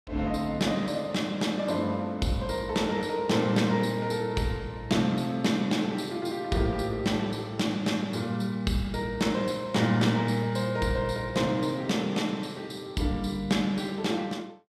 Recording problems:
none

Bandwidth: 14.5 kHz